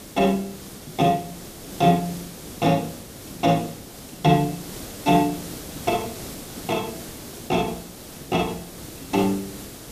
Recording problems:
hiss; SNR 13 dB

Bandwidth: 14.5 kHz